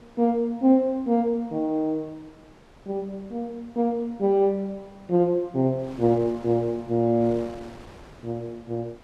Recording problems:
wind noise; below 1.1 kHz, SNR 24 dB

